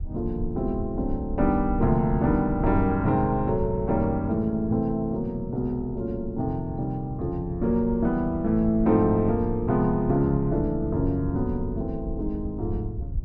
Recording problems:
low-frequency rumble; below 80 Hz, SNR 11 dB

